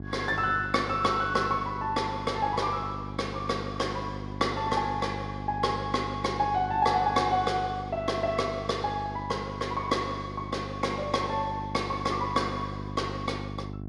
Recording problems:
electrical hum; 50 Hz, harmonics up to 800 Hz, SNR 9 dB

